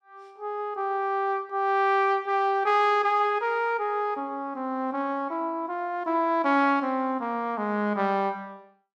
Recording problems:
none

